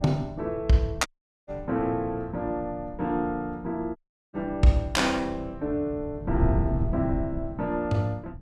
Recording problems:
wind noise; below 140 Hz, SNR 7 dB
dropout; at 1 s and at 4 s

